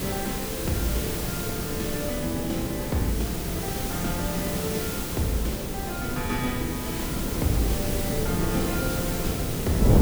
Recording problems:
background hiss; slope 0 dB per octave, SNR 2 dB
wind on the microphone; below 340 Hz, SNR 1 dB

